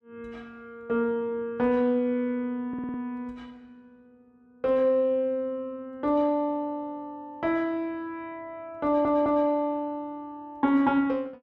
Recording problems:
audio stuttering; at 2.5 s and at 9 s

